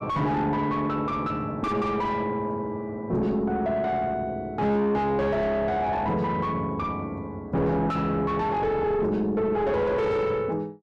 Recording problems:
distortion; soft clipping, signal-to-distortion ratio 6 dB

